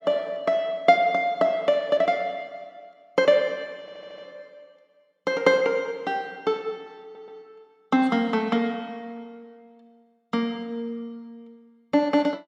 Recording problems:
audio stuttering; at 4 s and at 7 s

